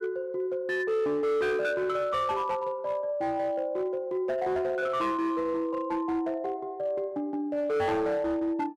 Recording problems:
distortion; hard clipping, signal-to-distortion ratio 11 dB

